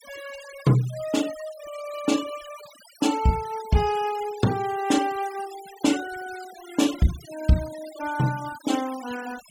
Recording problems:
denoising artefacts; signal-to-artefact ratio 15 dB

